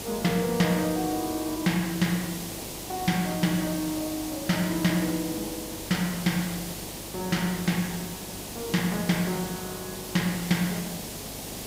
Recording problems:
hum; 50 Hz, harmonics up to 500 Hz, SNR 20 dB
background hiss; SNR 7 dB

